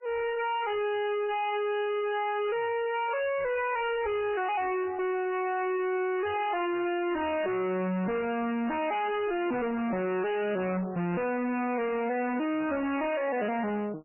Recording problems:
lossy compression; MP3, log-spectral distance 4 dB, nothing above 2.6 kHz
distorted audio; soft clipping, signal-to-distortion ratio 5 dB

